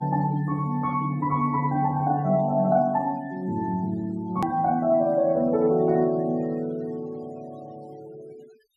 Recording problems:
denoising artefacts; signal-to-artefact ratio 26 dB
hard cut with a click; at 4.5 s

